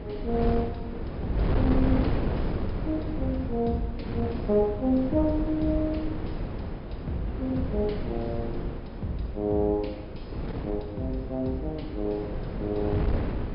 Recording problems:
low-pass filter; nothing above 5.5 kHz
wind noise; below 310 Hz, SNR 3 dB

